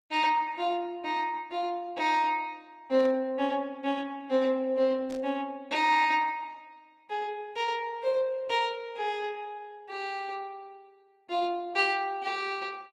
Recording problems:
codec artefacts; Opus, log-spectral distance 2 dB
static burst; at 3 s and at 5 s; peak -15 dB vs average level

